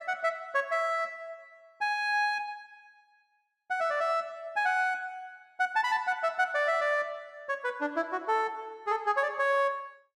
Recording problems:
none

